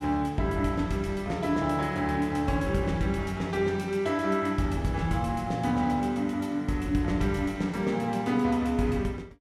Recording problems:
none

